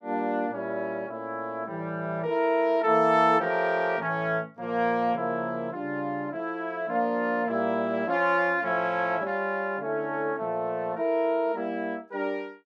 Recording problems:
none

